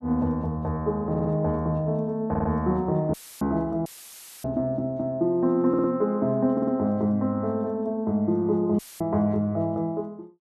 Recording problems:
audio stuttering; 4 times, first at 1 s
audio cutting out; at 3 s, at 4 s for 0.5 s and at 9 s; filled with static

